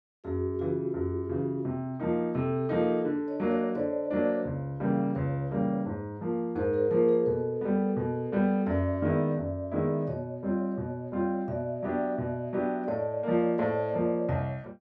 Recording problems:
none

